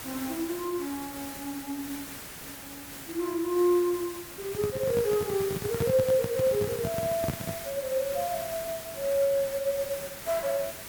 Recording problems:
background hiss; slope -2 dB per octave, SNR 9 dB
microphone handling noise; from 4.5 to 7.5 s; peak +3 dB vs average level

